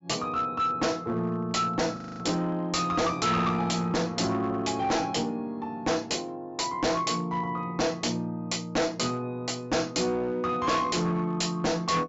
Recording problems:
treble missing; nothing above 7.5 kHz
distortion; hard clipping, uneven, signal-to-distortion ratio 7 dB
audio freezing; at 2 s

